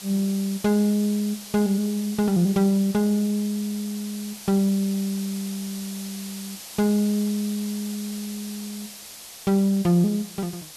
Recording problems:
hiss; SNR 13 dB

